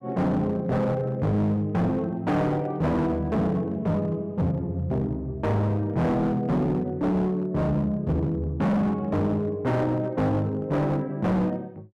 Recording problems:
distorted audio; hard clipping, signal-to-distortion ratio 7 dB

